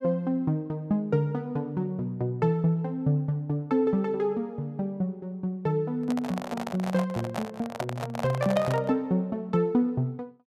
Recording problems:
handling noise; from 6 to 9 s; peak +1 dB vs average level

